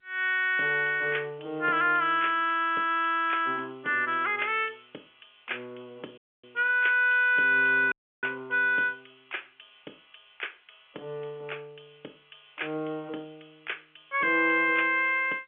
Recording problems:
phone line; 280 Hz to 3.4 kHz, G.711
dropout; at 6 s and at 8 s

